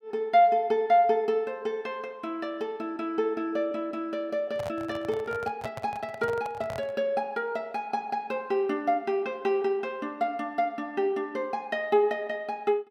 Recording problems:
microphone handling noise; from 4.5 to 7 s; peak -5 dB vs average level

